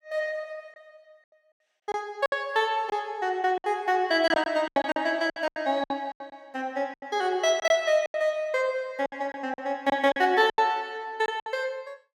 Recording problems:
lost packets; 11% of the sound replaced, filled with silence

